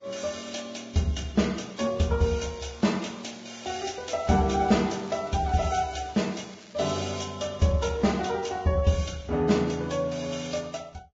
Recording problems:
lossy codec; Vorbis, log-spectral distance 5 dB, nothing above 7.3 kHz
crackling; from 2.5 to 7 s; loose cable, SNR 23 dB

